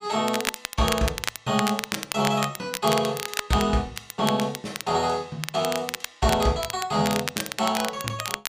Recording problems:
crackling; vinyl, SNR 6 dB

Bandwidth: 15 kHz